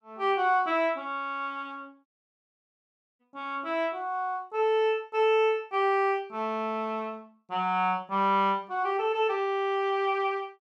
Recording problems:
audio cutting out; at 2 s for 1 s

